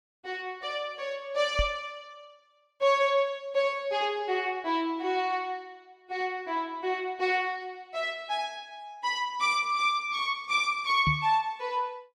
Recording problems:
microphone bump; at 1.5 s and at 11 s; peak +3 dB vs average level

